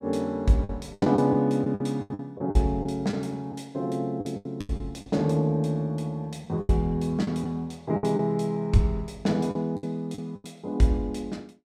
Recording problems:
packet loss; 10% of the sound replaced, filled with the last packet

